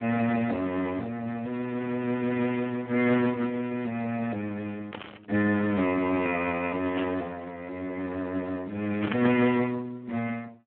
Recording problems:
telephone audio; 150 Hz to 3 kHz, Speex
static burst; at 5 s, at 7 s and at 9 s; peak -1 dB vs average level

